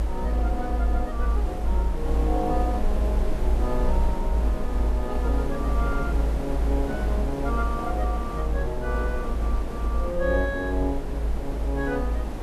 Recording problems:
background hiss; slope -8 dB per octave, SNR 5 dB
rumble; below 56 Hz, strongest tone 54 Hz, SNR -3 dB
wind on the microphone; below 470 Hz, SNR 14 dB

